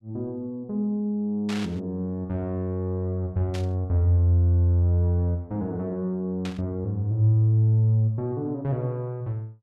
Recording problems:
static burst; at 1.5 s, at 3.5 s and at 6.5 s; peak -7 dB vs average level

